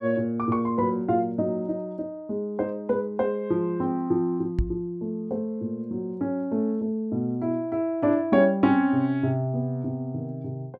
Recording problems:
knock on the microphone; at 4.5 s; peak +4 dB vs average level

